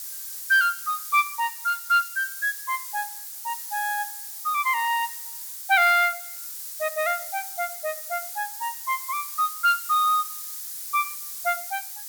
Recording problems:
hiss; SNR 8 dB

